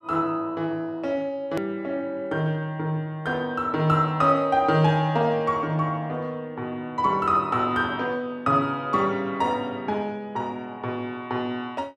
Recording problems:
hard cut with a click; at 1.5 s

